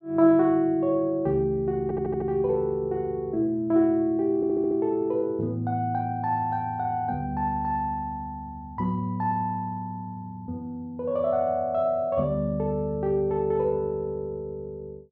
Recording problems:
audio stuttering; at 2 s and at 4.5 s

